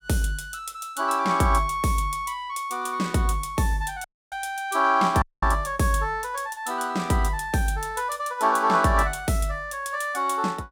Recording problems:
audio cutting out; at 4 s and at 5 s

